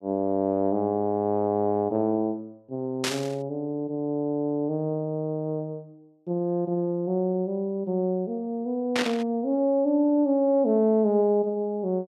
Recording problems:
static burst; at 3 s and at 9 s; peak +2 dB vs average level

